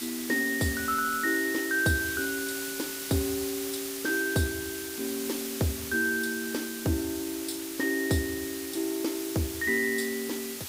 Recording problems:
hiss; slope +1 dB per octave, SNR 6 dB

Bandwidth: 15.5 kHz